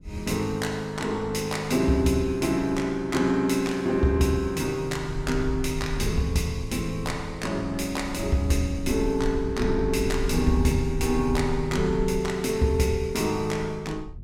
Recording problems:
rumble; below 78 Hz, SNR 10 dB

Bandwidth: 16 kHz